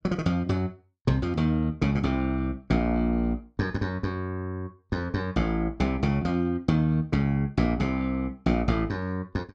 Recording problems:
none

